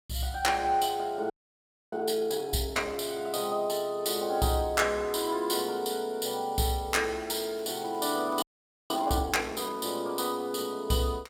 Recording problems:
frozen audio; at 1.5 s for 0.5 s and at 8.5 s
crackle; from 7.5 to 9 s; loose cable, SNR 29 dB

